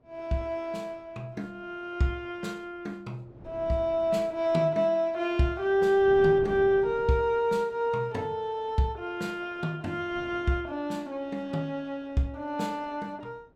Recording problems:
wind noise; below 390 Hz, SNR 18 dB

